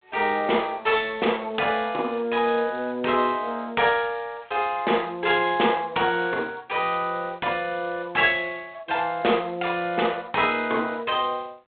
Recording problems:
telephone audio; 300 Hz to 3.5 kHz, G.726

